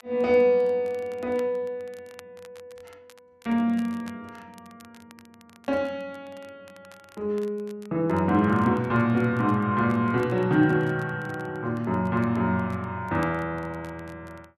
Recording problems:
crackling; vinyl, SNR 29 dB

